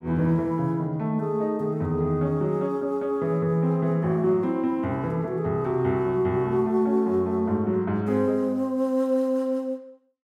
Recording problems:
none

